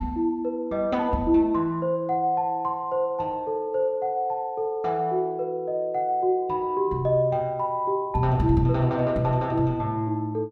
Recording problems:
none

